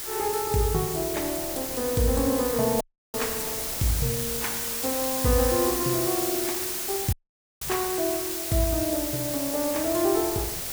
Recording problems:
background hiss; slope +1 dB per octave, SNR 1 dB
wind on the microphone; below 660 Hz, SNR 19 dB
audio cutting out; at 3 s and at 7 s

